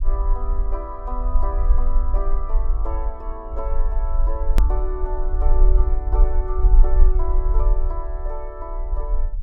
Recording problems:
rumble; below 44 Hz, strongest tone 22 Hz, SNR -10 dB
hard cut with a click; at 4.5 s

